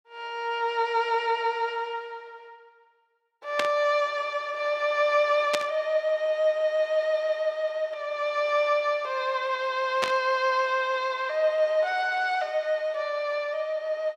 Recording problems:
static burst; at 3.5 s, at 5.5 s and at 10 s; peak +3 dB vs average level

